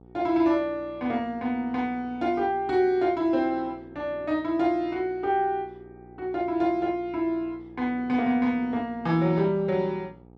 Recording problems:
hum; 60 Hz, harmonics up to 1.2 kHz, SNR 24 dB

